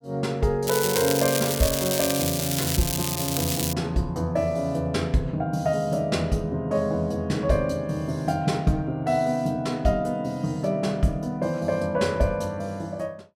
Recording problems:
crackling; from 0.5 to 3.5 s; loose cable, SNR 1 dB

